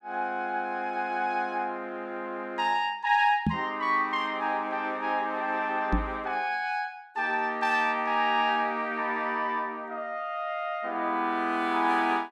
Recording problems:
knock on the microphone; at 3.5 s and at 6 s; peak +5 dB vs average level

